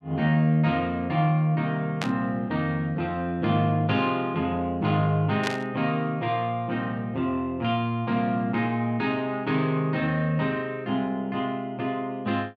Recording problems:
burst of static; at 2 s and at 5.5 s; peak +1 dB vs average level

